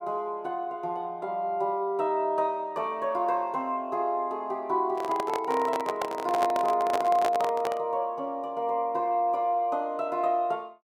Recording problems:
handling noise; from 5 to 8 s; peak +3 dB vs average level

